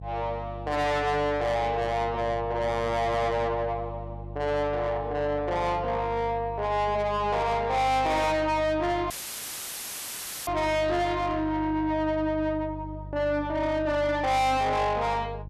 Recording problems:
distortion; soft clipping, signal-to-distortion ratio 6 dB
electrical hum; 50 Hz, harmonics up to 500 Hz, SNR 13 dB
dropout; at 9 s for 1.5 s; filled with static

